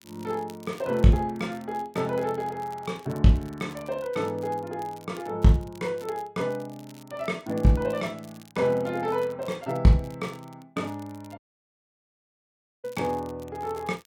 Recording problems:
crackle; vinyl, SNR 25 dB
dropout; at 11 s for 1.5 s

